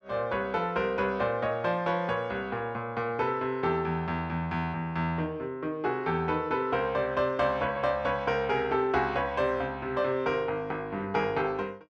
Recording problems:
none

